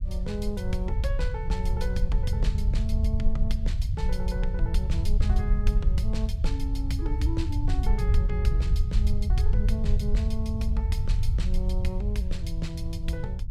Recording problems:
low-frequency rumble; below 74 Hz, SNR -6 dB

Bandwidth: 16 kHz